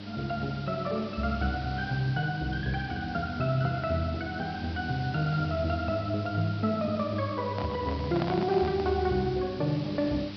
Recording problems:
treble missing; nothing above 5.5 kHz
electrical hum; 50 Hz, harmonics up to 900 Hz, SNR 13 dB
hiss; SNR 15 dB
microphone handling noise; from 7.5 to 9 s; peak +1 dB vs average level

